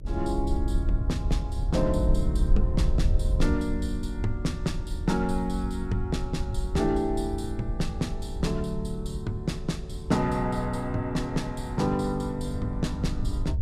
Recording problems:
hum; 50 Hz, harmonics up to 600 Hz, SNR 22 dB
wind on the microphone; below 74 Hz, SNR 2 dB

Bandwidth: 14.5 kHz